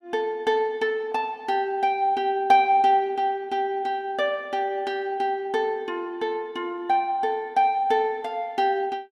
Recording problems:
none

